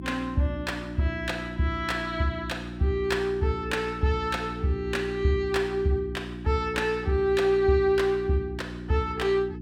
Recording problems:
electrical hum; 60 Hz, harmonics up to 360 Hz, SNR 11 dB

